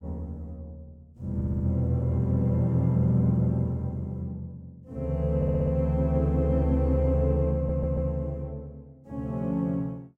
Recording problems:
stutter; at 1.5 s, at 5.5 s and at 7.5 s

